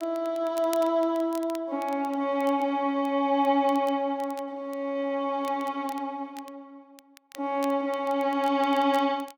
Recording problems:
crackle; vinyl, SNR 23 dB

